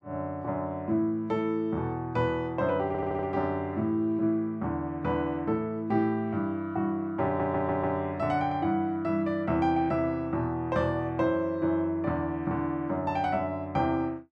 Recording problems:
stutter; at 3 s and at 7.5 s

